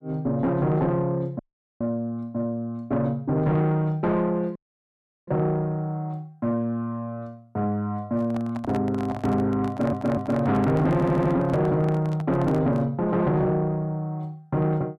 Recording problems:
distortion; soft clipping, signal-to-distortion ratio 10 dB
audio cutting out; at 1.5 s and at 4.5 s for 0.5 s
microphone handling noise; from 8 to 13 s; peak -4 dB vs average level
stutter; at 9.5 s and at 11 s

